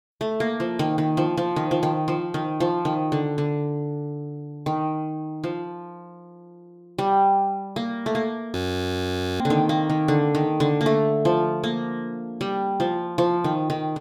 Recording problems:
frozen audio; at 8.5 s for 1 s

